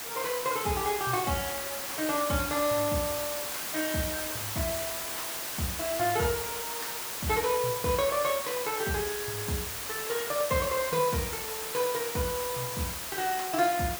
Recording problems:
hiss; slope -1 dB per octave, SNR 2 dB

